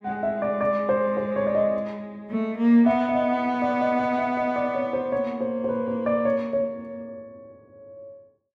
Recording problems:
none

